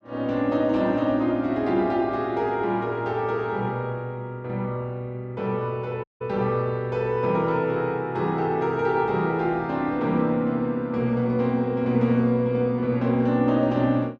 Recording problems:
audio cutting out; at 6 s

